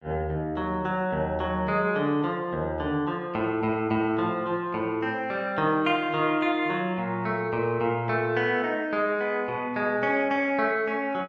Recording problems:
none

